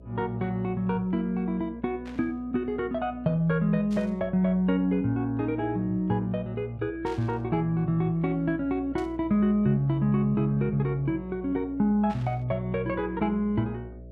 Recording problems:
hum; 60 Hz, harmonics up to 660 Hz, SNR 19 dB
static burst; 5 times, first at 2 s; peak -15 dB vs average level

